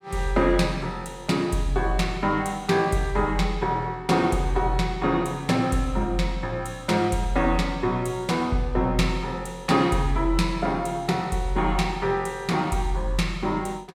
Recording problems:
none

